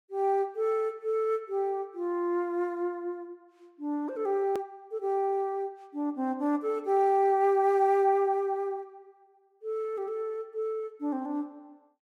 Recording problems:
edit click; at 4.5 s

